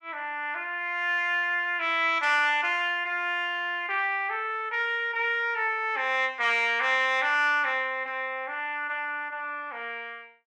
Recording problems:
none

